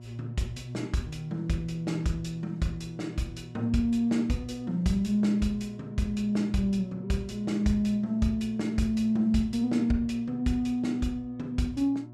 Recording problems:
hum; 60 Hz, harmonics up to 720 Hz, SNR 16 dB

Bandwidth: 14.5 kHz